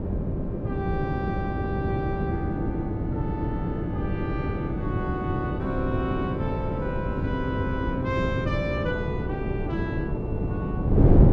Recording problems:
wind on the microphone; below 280 Hz, SNR -4 dB

